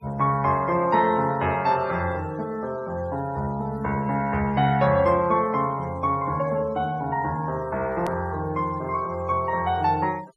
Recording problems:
noise reduction artefacts; signal-to-artefact ratio 25 dB
edit click; at 8 s

